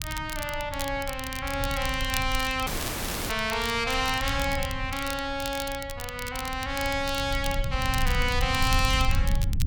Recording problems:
rumble; below 92 Hz, SNR 6 dB
crackle; vinyl, SNR 10 dB
audio cutting out; at 2.5 s for 0.5 s

